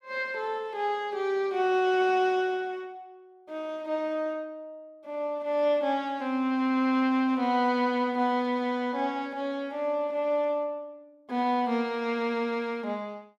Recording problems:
none

